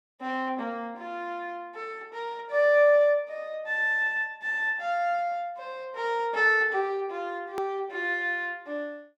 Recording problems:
click at an edit; at 7.5 s

